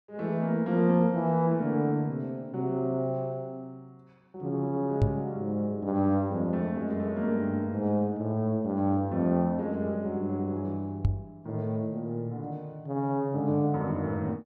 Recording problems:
microphone thump; at 5 s and at 11 s; peak +8 dB vs average level

